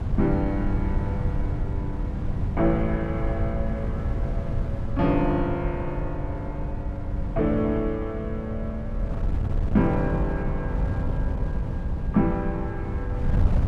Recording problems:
wind on the microphone; below 120 Hz, SNR 1 dB

